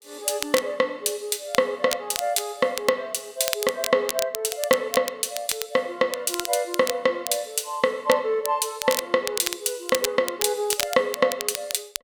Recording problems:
crackle; vinyl, SNR 7 dB

